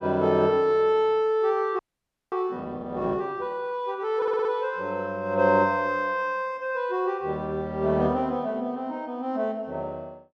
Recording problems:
audio freezing; at 2 s for 0.5 s
stutter; at 4 s

